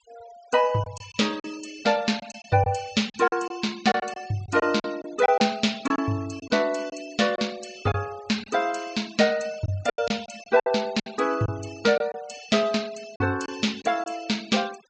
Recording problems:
treble missing; nothing above 8 kHz
noise reduction artefacts; signal-to-artefact ratio 20 dB
lost packets; 7% of the sound replaced, filled with silence

